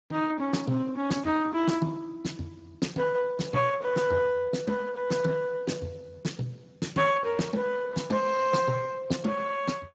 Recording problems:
codec artefacts; Speex, log-spectral distance 4 dB, nothing above 7.6 kHz

